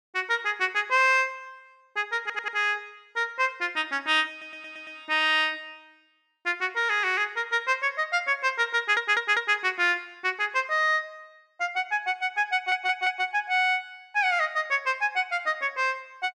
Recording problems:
stutter; 4 times, first at 2 s

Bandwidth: 12.5 kHz